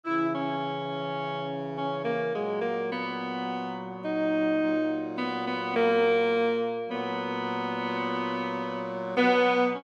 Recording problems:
none

